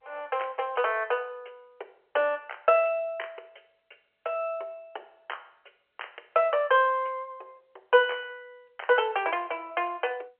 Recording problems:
telephone audio; 370 Hz to 3.2 kHz, G.711

